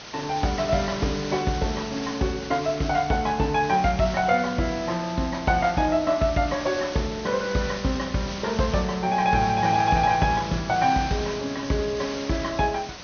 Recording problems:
treble cut off; nothing above 6.4 kHz
background hiss; slope -1 dB per octave, SNR 12 dB

